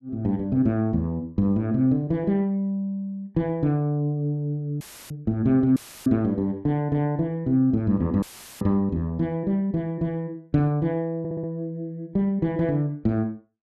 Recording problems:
dropout; at 5 s, at 6 s and at 8 s; filled with static
stutter; at 11 s

